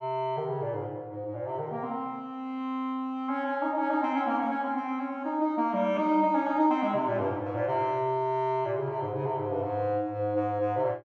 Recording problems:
none

